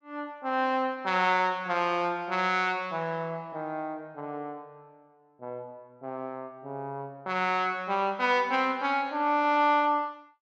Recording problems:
none

